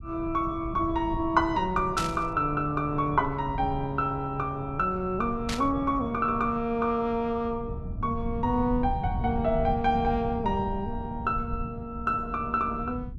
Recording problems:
rumble; below 140 Hz, SNR 10 dB
burst of static; at 2 s and at 5.5 s; peak -1 dB vs average level

